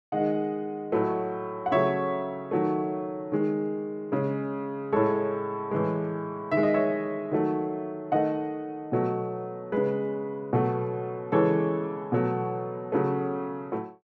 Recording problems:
none

